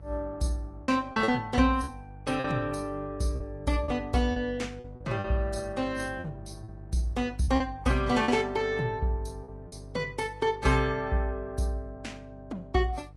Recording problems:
lossy compression; AAC, then Vorbis, log-spectral distance 2 dB, nothing above 11 kHz
hum; 50 Hz, harmonics up to 650 Hz, SNR 17 dB
packet loss; 5% of the sound replaced, filled with repeated pitch periods

